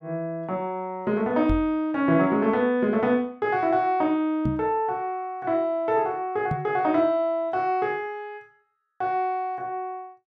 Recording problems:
microphone bump; at 1.5 s, at 4.5 s and at 6.5 s; peak +1 dB vs average level

